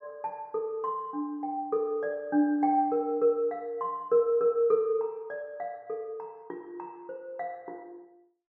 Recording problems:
none

